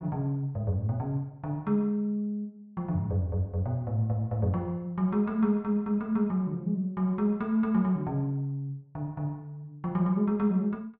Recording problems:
none

